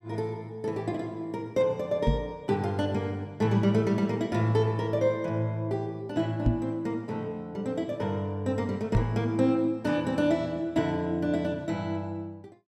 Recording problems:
microphone thump; at 2 s, at 6.5 s and at 9 s; peak +7 dB vs average level

